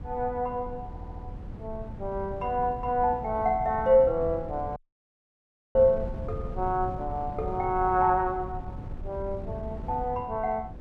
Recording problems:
wind noise; below 160 Hz, SNR 12 dB
audio stuttering; at 1 s
dropout; at 5 s for 1 s

